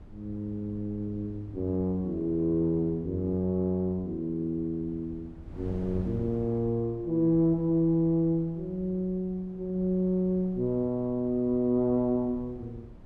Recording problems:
wind on the microphone; below 190 Hz, SNR 19 dB

